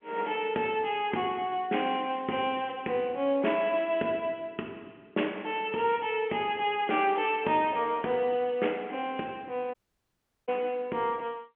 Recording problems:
telephone audio; 220 Hz to 3.2 kHz, G.711
audio cutting out; at 9.5 s for 0.5 s

